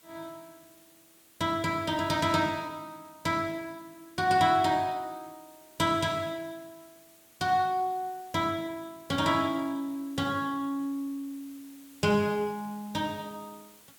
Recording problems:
background hiss; slope -1 dB per octave, SNR 25 dB

